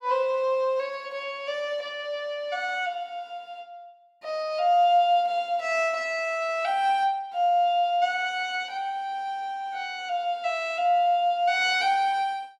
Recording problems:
none

